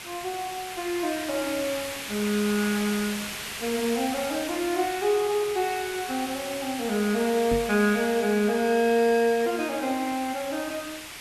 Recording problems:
background hiss; SNR 8 dB
microphone bump; at 7.5 s; peak +1 dB vs average level

